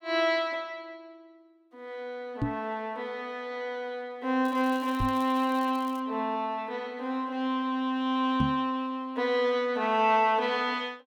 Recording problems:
microphone bump; at 2.5 s, at 5 s and at 8.5 s; peak +4 dB vs average level
crackle; from 4.5 to 6 s; loose cable, SNR 23 dB

